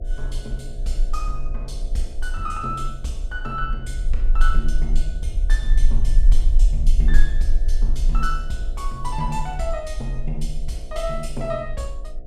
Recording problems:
hum; 60 Hz, harmonics up to 720 Hz, SNR 16 dB
rumble; below 38 Hz, strongest tone 22 Hz, SNR -5 dB

